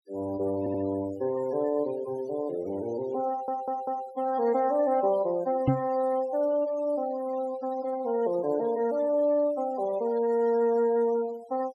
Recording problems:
denoising artefacts; signal-to-artefact ratio 18 dB
audio stuttering; at 0.5 s and at 3.5 s
knock on the microphone; at 5.5 s; peak +7 dB vs average level

